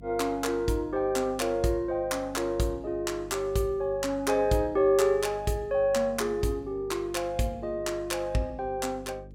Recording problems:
hum; 50 Hz, harmonics up to 550 Hz, SNR 19 dB

